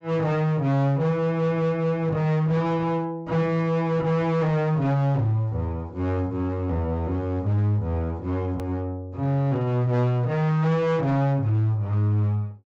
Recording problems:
low-pass filter; nothing above 8 kHz
distorted audio; hard clipping, uneven, signal-to-distortion ratio 10 dB
edit click; at 8.5 s

